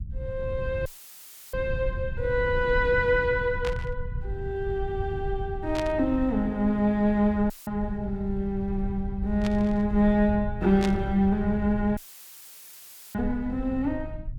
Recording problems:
low-frequency rumble; below 94 Hz, SNR 9 dB
dropout; at 1 s for 0.5 s, at 7.5 s and at 12 s for 1 s; filled with static
static burst; 4 times, first at 3.5 s; peak -4 dB vs average level

